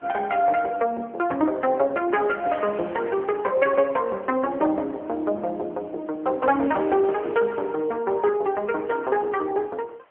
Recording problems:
telephone audio; 280 Hz to 3.1 kHz, AMR-NB
wind on the microphone; below 2 kHz, SNR 23 dB

